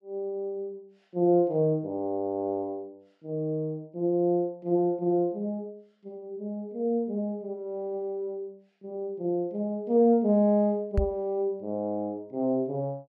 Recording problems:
knock on the microphone; at 11 s; peak +5 dB vs average level

